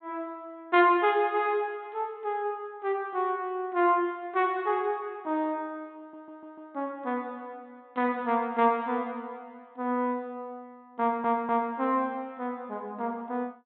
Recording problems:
treble cut off; nothing above 4 kHz
audio stuttering; at 6 s and at 11 s

